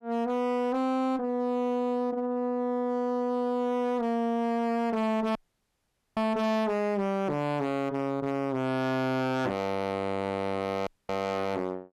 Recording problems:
distorted audio; hard clipping, uneven, signal-to-distortion ratio 7 dB
audio cutting out; at 5.5 s for 1 s and at 11 s

